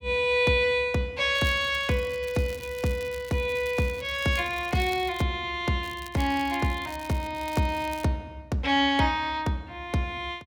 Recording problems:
crackling; from 1.5 to 5 s and from 6 to 8 s; loose cable, SNR 20 dB

